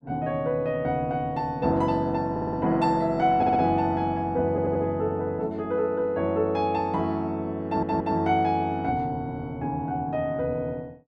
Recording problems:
audio stuttering; 4 times, first at 2.5 s

